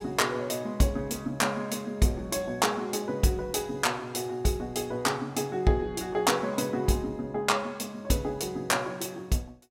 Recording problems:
none

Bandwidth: 16 kHz